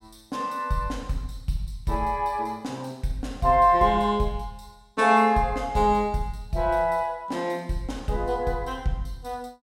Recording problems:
none

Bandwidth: 16 kHz